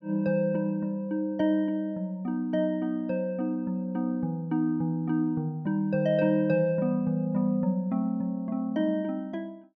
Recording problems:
none

